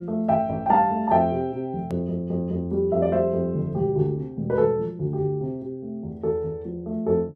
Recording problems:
hard cut with a click; at 2 s

